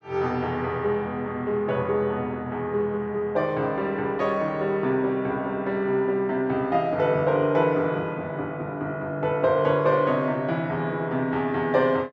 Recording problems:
none

